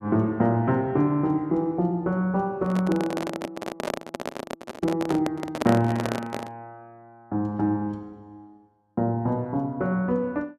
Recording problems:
handling noise; from 2.5 to 6.5 s; peak +2 dB vs average level

